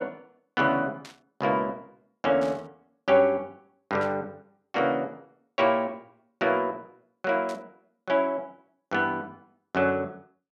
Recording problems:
static burst; 4 times, first at 1 s; peak -13 dB vs average level

